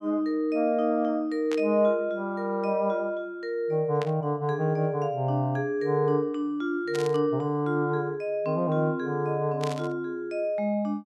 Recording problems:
burst of static; 4 times, first at 1.5 s; peak -6 dB vs average level

